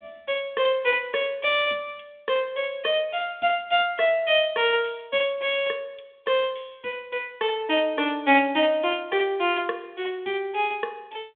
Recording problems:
telephone audio; 240 Hz to 3.6 kHz, G.726

